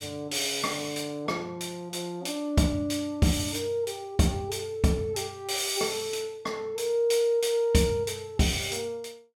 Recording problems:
none

